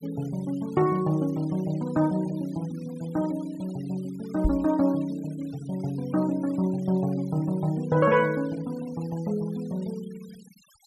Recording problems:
noise reduction artefacts; signal-to-artefact ratio 24 dB
microphone thump; at 4.5 s; peak +5 dB vs average level

